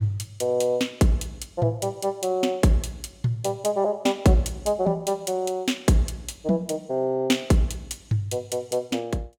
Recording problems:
none

